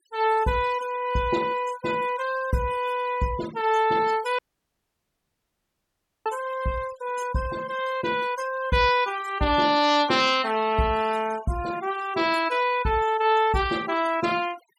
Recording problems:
noise reduction artefacts; signal-to-artefact ratio 16 dB
dropout; at 4.5 s for 2 s

